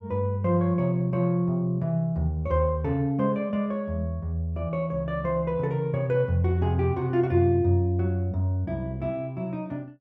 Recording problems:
none

